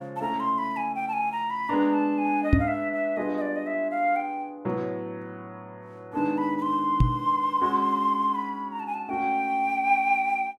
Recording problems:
microphone bump; at 2.5 s and at 7 s; peak +10 dB vs average level

